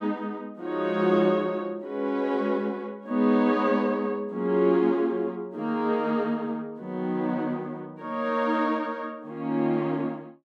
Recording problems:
none

